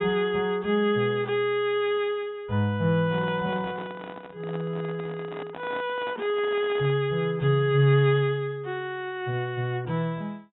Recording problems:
low-pass filter; nothing above 3.8 kHz
handling noise; from 3 to 7 s; peak -9 dB vs average level

